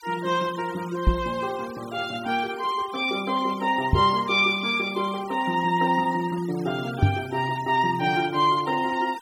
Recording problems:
denoising artefacts; signal-to-artefact ratio 20 dB
microphone thump; at 1 s, at 4 s and at 7 s; peak +9 dB vs average level

